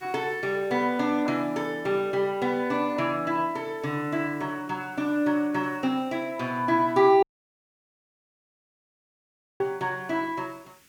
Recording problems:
background hiss; SNR 30 dB
audio cutting out; at 7 s for 2.5 s

